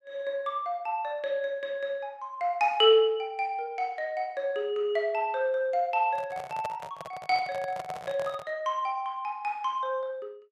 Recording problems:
microphone handling noise; from 6 to 8.5 s; peak -4 dB vs average level

